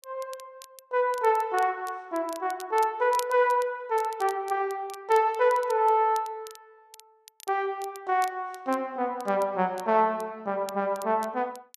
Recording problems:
crackle; vinyl, SNR 21 dB

